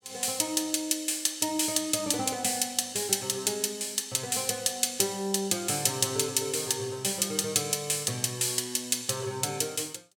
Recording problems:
none

